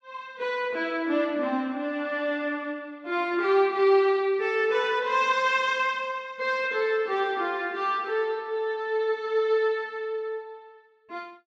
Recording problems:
none

